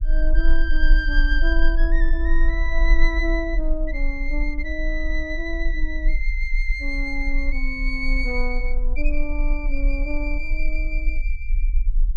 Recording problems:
rumble; below 36 Hz, strongest tone 20 Hz, SNR -2 dB

